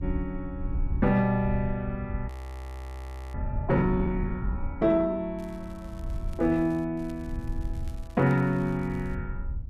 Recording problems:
wind on the microphone; below 82 Hz, SNR 9 dB
audio freezing; at 2.5 s for 1 s
crackling; from 5.5 to 7 s and from 7 to 9 s; loose cable, SNR 29 dB

